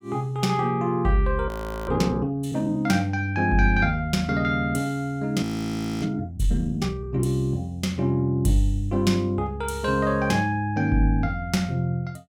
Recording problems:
audio freezing; at 1.5 s and at 5.5 s for 0.5 s

